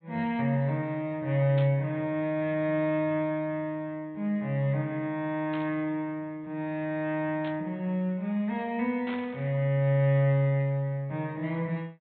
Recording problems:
treble missing; nothing above 4 kHz
burst of static; 4 times, first at 1.5 s; peak -8 dB vs average level

